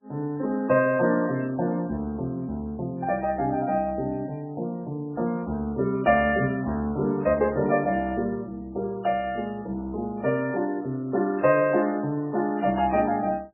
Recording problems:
lossy codec; MP3, log-spectral distance 2 dB, nothing above 2.4 kHz

